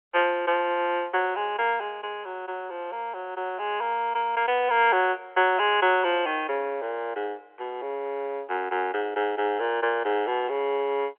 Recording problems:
phone line; 320 Hz to 3.3 kHz, G.711

